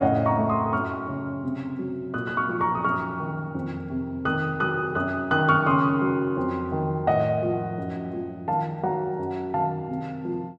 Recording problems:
none

